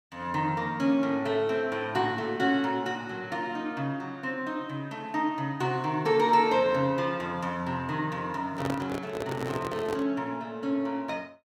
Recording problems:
microphone handling noise; from 8.5 to 10 s; peak -1 dB vs average level

